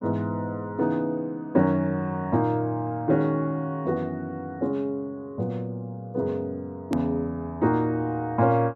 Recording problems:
click at an edit; at 7 s

